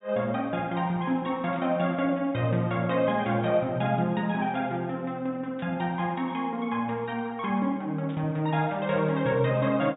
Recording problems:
low-pass filter; nothing above 4 kHz
burst of static; at 1.5 s, at 5.5 s and at 8 s; peak -16 dB vs average level

